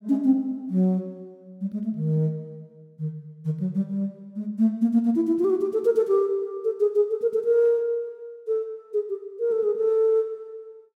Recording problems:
none

